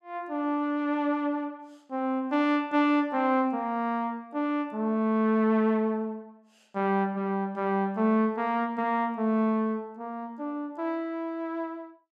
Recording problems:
none

